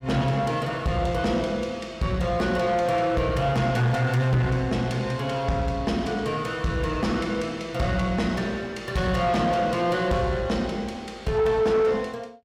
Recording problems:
distorted audio; soft clipping, signal-to-distortion ratio 10 dB

